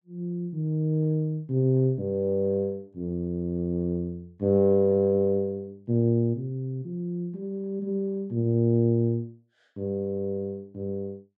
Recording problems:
none

